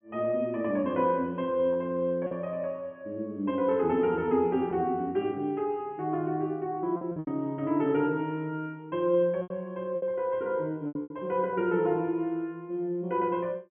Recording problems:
treble cut off; nothing above 3.3 kHz
lost packets; 4% of the sound replaced, filled with repeated pitch periods

